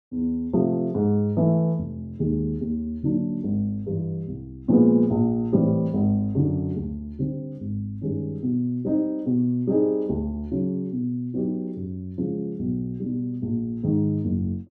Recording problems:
none

